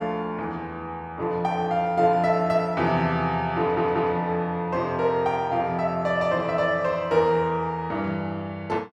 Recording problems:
audio stuttering; at 3.5 s

